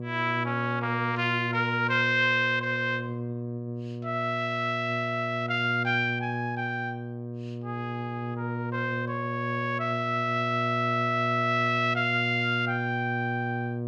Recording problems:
hum; 60 Hz, harmonics up to 720 Hz, SNR 6 dB

